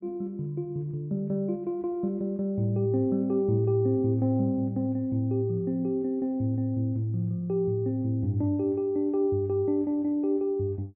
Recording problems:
none

